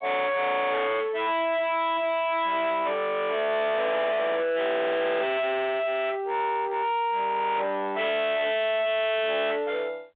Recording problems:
phone line; 990 Hz to 2 kHz, G.726
distortion; hard clipping, signal-to-distortion ratio 6 dB

